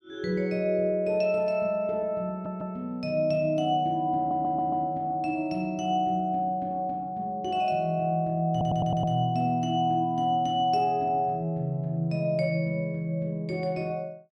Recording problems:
audio stuttering; at 2.5 s, at 4 s and at 8.5 s

